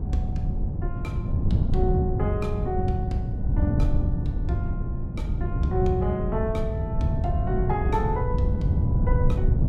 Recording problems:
wind noise; below 140 Hz, SNR -4 dB

